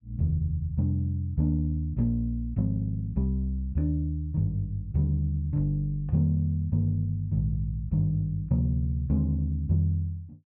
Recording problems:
none

